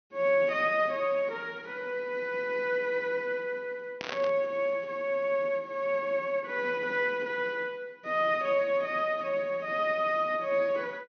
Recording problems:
low-pass filter; nothing above 6.3 kHz
burst of static; at 4 s; peak -3 dB vs average level

